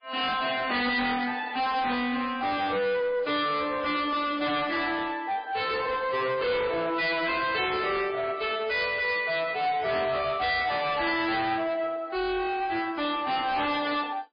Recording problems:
lossy compression; MP3, log-spectral distance 4 dB, nothing above 4.6 kHz
distortion; soft clipping, signal-to-distortion ratio 6 dB

